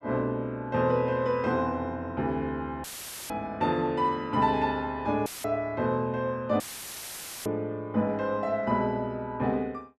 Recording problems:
audio cutting out; at 3 s, at 5.5 s and at 6.5 s for 1 s; filled with static

